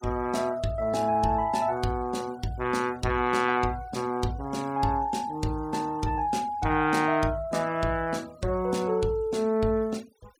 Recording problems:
noise reduction artefacts; signal-to-artefact ratio 24 dB

